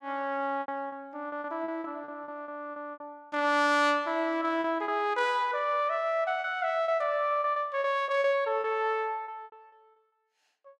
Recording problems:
packet loss; 12% of the sound replaced, filled with repeated pitch periods

